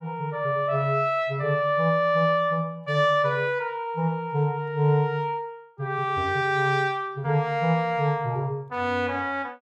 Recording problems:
none

